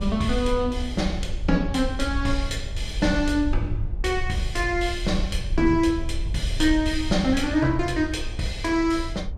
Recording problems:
low-frequency rumble; below 66 Hz, SNR 7 dB
wind noise; below 460 Hz, SNR 21 dB

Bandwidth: 14 kHz